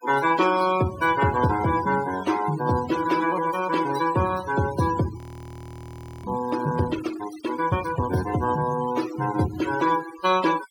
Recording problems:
denoising artefacts; signal-to-artefact ratio 13 dB
frozen audio; at 5 s for 1 s

